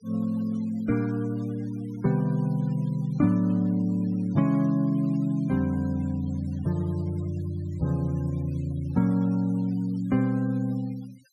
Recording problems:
denoising artefacts; signal-to-artefact ratio 25 dB

